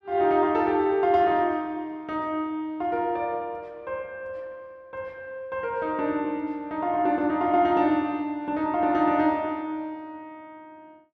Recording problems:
none

